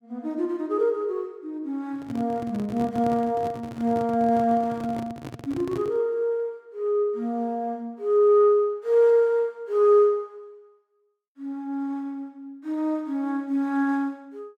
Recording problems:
microphone handling noise; from 2 to 6 s; peak -7 dB vs average level

